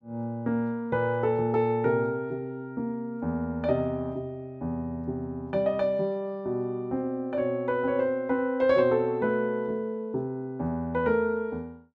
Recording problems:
none

